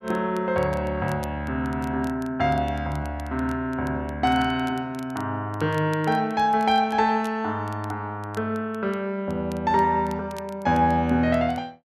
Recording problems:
crackling; vinyl, SNR 26 dB

